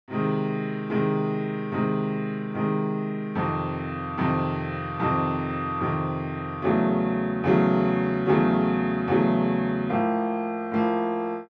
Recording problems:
none

